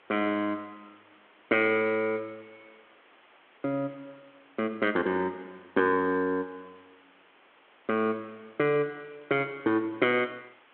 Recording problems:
phone line; 240 Hz to 3.6 kHz, G.726
hiss; SNR 29 dB

